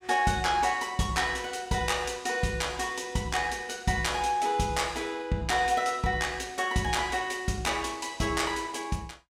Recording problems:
none

